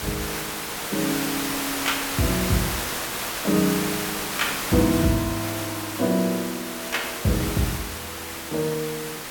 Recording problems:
background hiss; slope -2 dB per octave, SNR 2 dB

